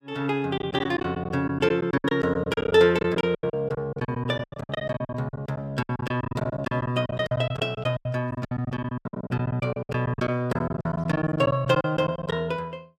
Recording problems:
packet loss; 20% of the sound replaced, filled with silence

